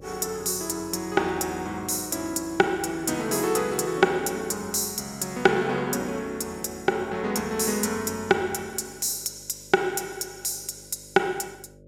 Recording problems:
electrical hum; 50 Hz, harmonics up to 600 Hz, SNR 25 dB

